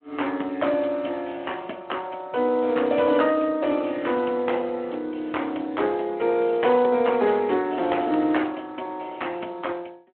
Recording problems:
phone line; 220 Hz to 3.3 kHz, Speex

